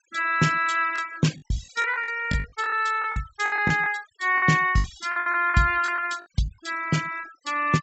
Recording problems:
treble missing; nothing above 8 kHz
denoising artefacts; signal-to-artefact ratio 19 dB
lost packets; 11% of the sound replaced, filled with the last packet

